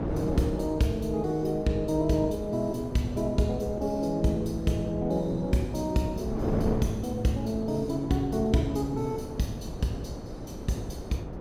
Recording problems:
wind noise; below 440 Hz, SNR 8 dB

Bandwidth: 16.5 kHz